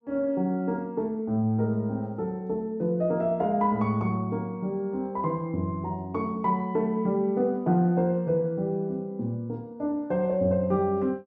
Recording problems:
none

